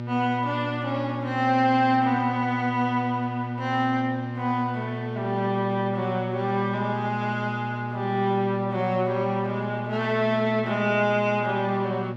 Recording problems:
hum; 60 Hz, harmonics up to 1.6 kHz, SNR 7 dB

